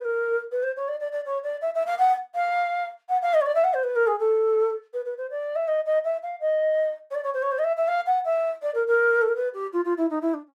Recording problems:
none

